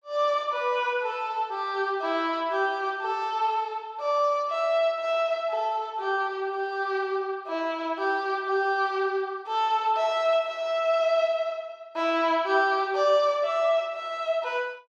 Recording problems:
none

